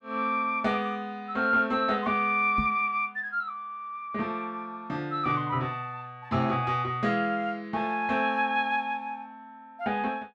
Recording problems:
microphone bump; at 2.5 s; peak 0 dB vs average level

